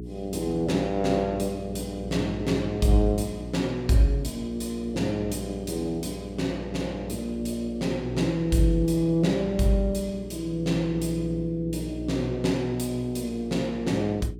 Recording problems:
hum; 60 Hz, harmonics up to 420 Hz, SNR 11 dB

